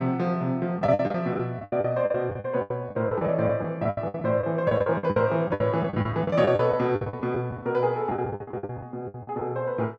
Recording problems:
packet loss; 18% of the sound replaced, filled with the last packet

